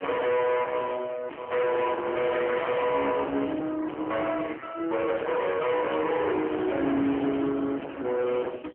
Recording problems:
phone line; 990 Hz to 2.6 kHz, AMR-NB
distortion; soft clipping, signal-to-distortion ratio 6 dB

